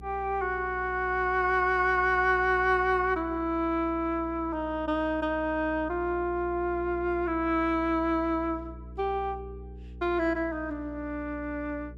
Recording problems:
hum; 60 Hz, harmonics up to 480 Hz, SNR 16 dB

